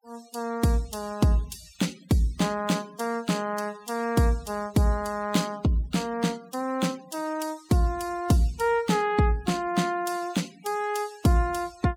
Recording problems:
noise reduction artefacts; signal-to-artefact ratio 21 dB

